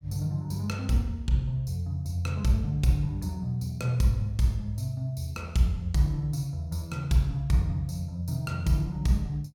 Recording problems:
none

